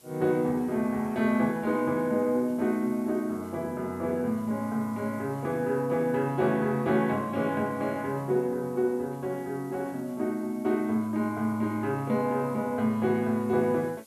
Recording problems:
background hiss; SNR 27 dB

